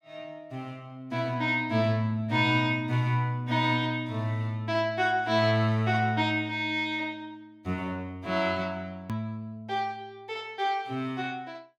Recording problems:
click at an edit; at 9 s

